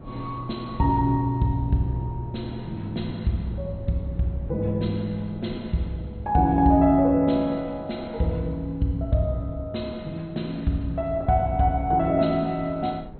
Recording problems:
lossy codec; MP2, log-spectral distance 2 dB, nothing above 4.2 kHz
wind on the microphone; below 290 Hz, SNR 18 dB

